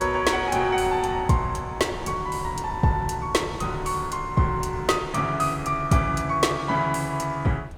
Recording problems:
wind noise; below 270 Hz, SNR 15 dB

